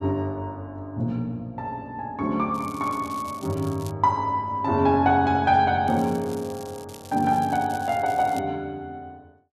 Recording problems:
crackle; from 2.5 to 4 s and from 6 to 8.5 s; loose cable, SNR 21 dB

